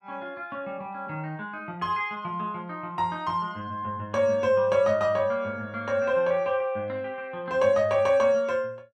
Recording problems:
none

